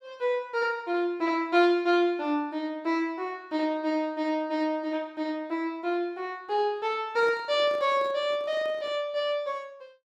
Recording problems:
handling noise; from 7 to 9 s; peak -11 dB vs average level

